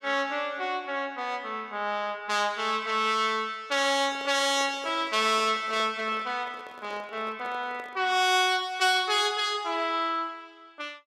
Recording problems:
microphone handling noise; from 4 to 8 s; peak -12 dB vs average level

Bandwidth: 16 kHz